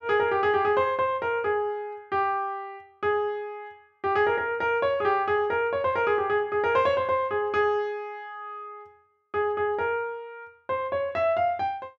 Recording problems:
none

